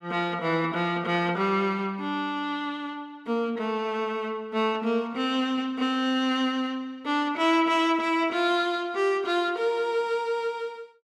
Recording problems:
none

